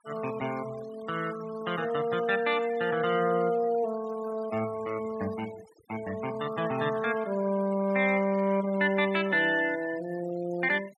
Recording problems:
denoising artefacts; signal-to-artefact ratio 19 dB

